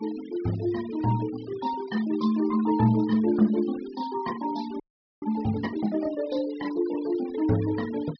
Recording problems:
treble missing; nothing above 5.5 kHz
noise reduction artefacts; signal-to-artefact ratio 18 dB
audio freezing; at 5 s

